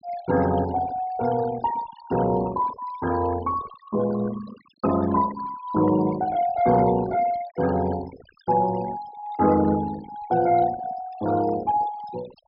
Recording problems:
treble missing; nothing above 5.2 kHz
noise reduction artefacts; signal-to-artefact ratio 16 dB

